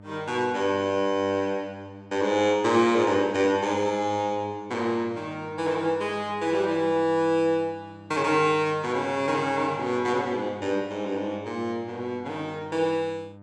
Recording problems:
hum; 50 Hz, harmonics up to 1.5 kHz, SNR 21 dB

